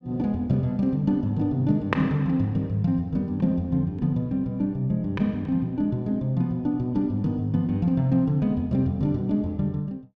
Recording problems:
none

